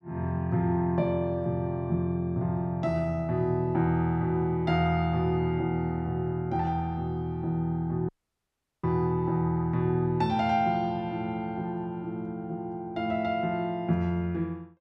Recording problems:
audio cutting out; at 8 s for 0.5 s

